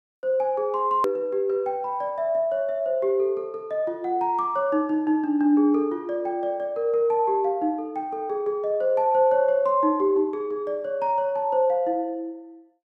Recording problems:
hard cut with a click; at 1 s

